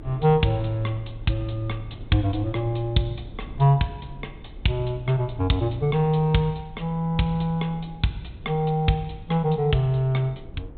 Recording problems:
treble missing; nothing above 4 kHz
rumble; below 130 Hz, SNR 18 dB

